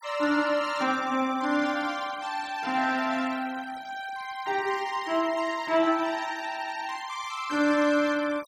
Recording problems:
denoising artefacts; signal-to-artefact ratio 19 dB

